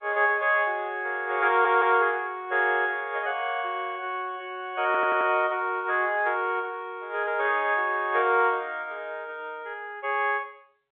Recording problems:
phone line; 320 Hz to 3.7 kHz, G.711
audio stuttering; at 1.5 s and at 5 s

